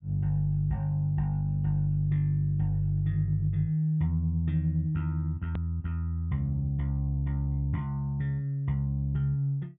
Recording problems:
treble missing; nothing above 4 kHz
hard cut with a click; at 5.5 s

